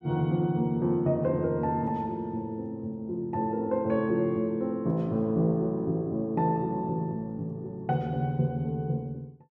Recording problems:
none

